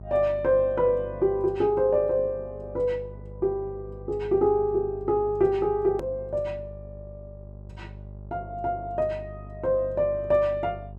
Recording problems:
hum; 50 Hz, harmonics up to 600 Hz, SNR 17 dB
edit click; at 6 s

